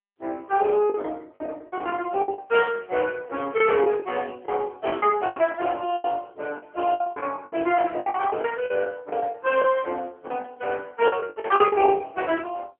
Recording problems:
phone line; 240 Hz to 3.3 kHz, AMR-NB
packet loss; 13% of the sound replaced, filled with the last packet

